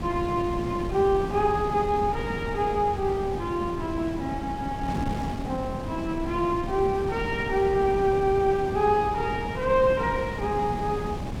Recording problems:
wind on the microphone; below 330 Hz, SNR 8 dB

